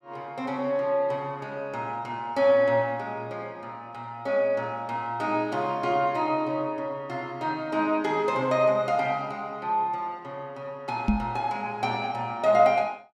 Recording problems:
microphone bump; at 11 s; peak +7 dB vs average level

